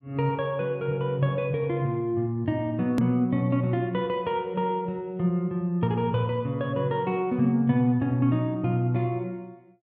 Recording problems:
edit click; at 3 s

